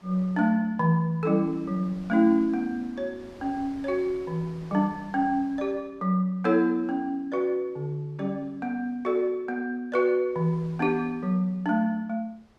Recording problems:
wind on the microphone; below 1.2 kHz, SNR 25 dB

